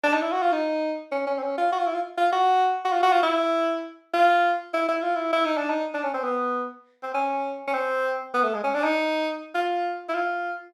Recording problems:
none

